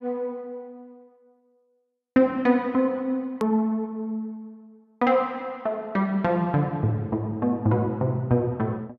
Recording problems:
edit click; at 3.5 s

